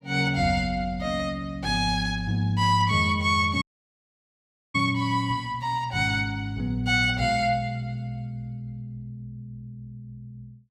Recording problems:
audio cutting out; at 3.5 s for 1 s

